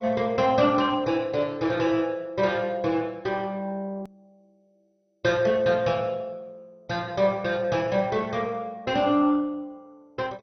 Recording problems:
codec artefacts; MP2, log-spectral distance 2 dB, nothing above 6 kHz
hard cut with a click; at 4 s

